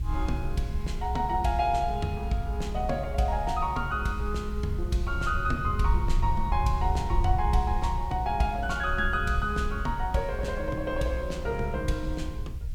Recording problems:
hiss; SNR 27 dB
low-frequency rumble; below 68 Hz, SNR 4 dB

